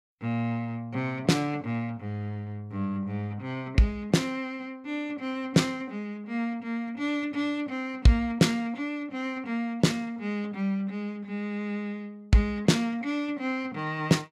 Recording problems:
none

